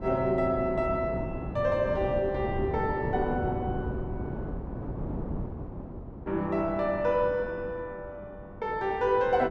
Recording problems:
wind on the microphone; below 330 Hz, SNR 8 dB

